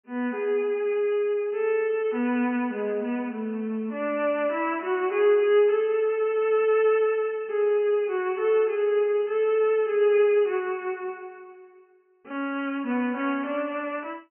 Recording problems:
treble cut off; nothing above 3 kHz

